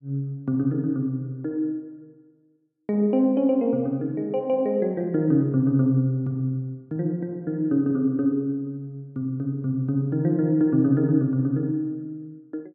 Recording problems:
none

